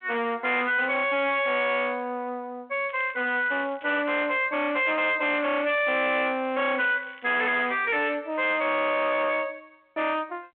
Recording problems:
telephone audio; 260 Hz to 3.9 kHz, G.726
distortion; hard clipping, uneven, signal-to-distortion ratio 6 dB
crackle; from 3 to 4 s, at 5.5 s and at 6.5 s; loose cable, SNR 24 dB

